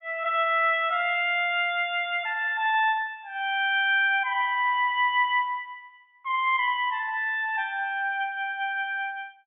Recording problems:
treble cut off; nothing above 3.6 kHz

